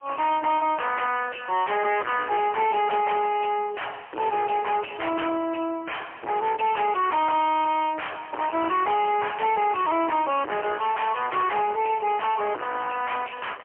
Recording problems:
telephone audio; 280 Hz to 3.2 kHz, AMR-NB, then MP3
distortion; soft clipping, signal-to-distortion ratio 3 dB

